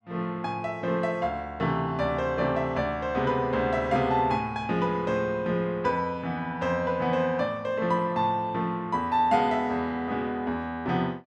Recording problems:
none

